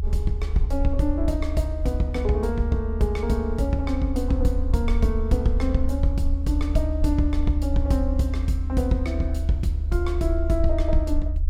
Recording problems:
low-frequency rumble; below 74 Hz, SNR 1 dB

